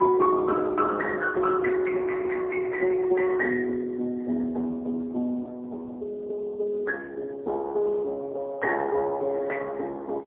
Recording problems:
telephone audio; 260 Hz to 2.2 kHz, AMR-NB, then MP3

